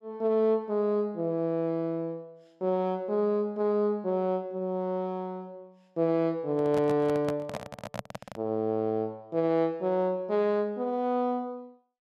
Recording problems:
microphone handling noise; from 6.5 to 8.5 s; peak -2 dB vs average level

